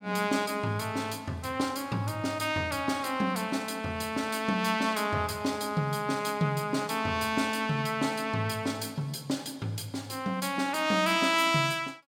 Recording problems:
none

